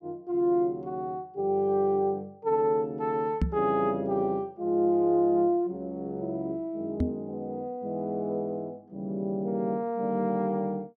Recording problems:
knock on the microphone; at 3.5 s and at 7 s; peak +5 dB vs average level

